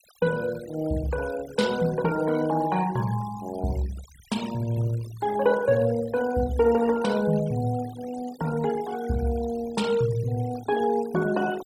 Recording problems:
denoising artefacts; signal-to-artefact ratio 17 dB

